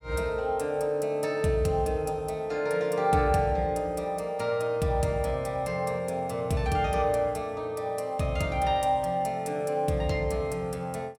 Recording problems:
none

